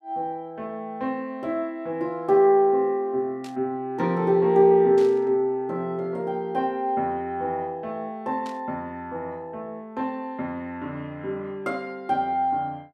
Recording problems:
burst of static; at 3.5 s, at 5 s and at 8.5 s; peak -14 dB vs average level

